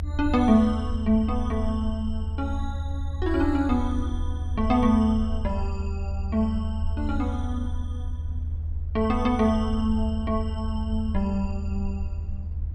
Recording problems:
low-frequency rumble; below 80 Hz, strongest tone 78 Hz, SNR 4 dB

